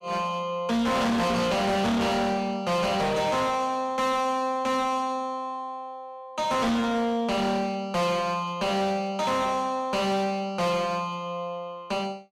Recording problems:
distortion; hard clipping, uneven, signal-to-distortion ratio 6 dB

